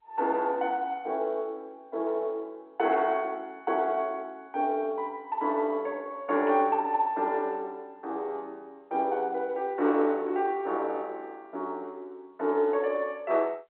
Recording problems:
phone line; 240 Hz to 3.6 kHz, G.711
static burst; at 3 s and at 6.5 s; peak -14 dB vs average level

